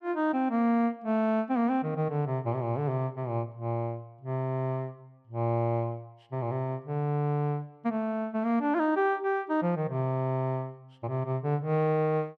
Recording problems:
none

